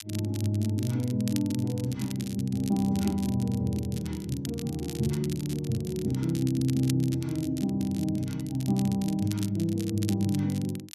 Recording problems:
crackle; vinyl, SNR 15 dB

